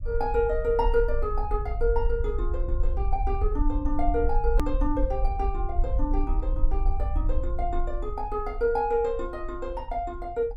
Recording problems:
rumble; below 50 Hz, SNR 1 dB
click at an edit; at 4.5 s

